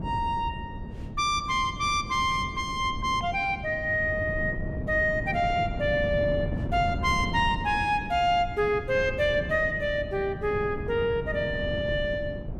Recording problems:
wind on the microphone; below 230 Hz, SNR 9 dB

